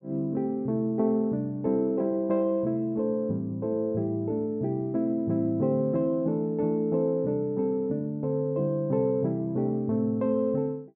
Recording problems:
none

